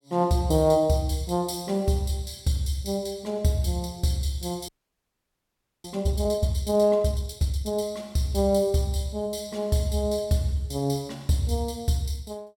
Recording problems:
audio freezing; at 4.5 s for 1 s

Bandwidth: 17 kHz